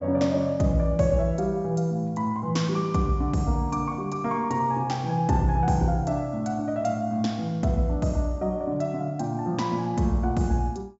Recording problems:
treble cut off; nothing above 8 kHz

